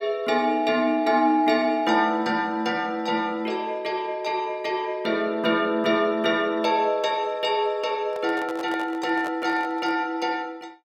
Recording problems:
handling noise; from 8 to 10 s; peak -8 dB vs average level

